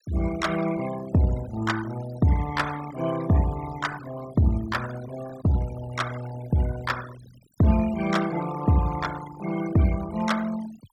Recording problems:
noise reduction artefacts; signal-to-artefact ratio 15 dB

